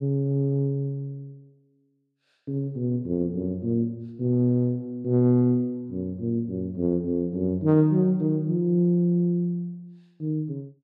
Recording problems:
none

